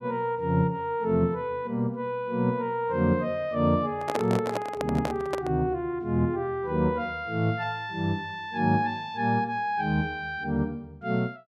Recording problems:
microphone handling noise; from 4 to 5.5 s; peak +2 dB vs average level

